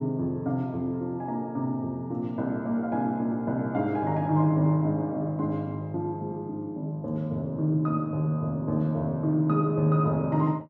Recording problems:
none

